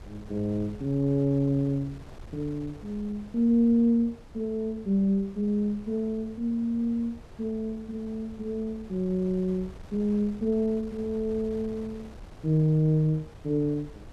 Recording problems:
wind on the microphone; below 320 Hz, SNR 20 dB

